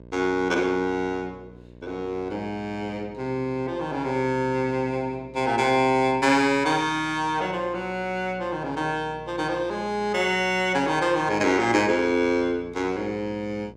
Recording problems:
hum; 60 Hz, harmonics up to 1.1 kHz, SNR 22 dB

